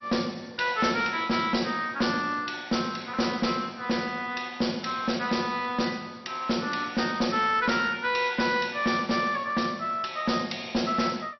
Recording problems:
lossy compression; MP2, log-spectral distance 4 dB, nothing above 5.8 kHz
distorted audio; hard clipping, uneven, signal-to-distortion ratio 11 dB

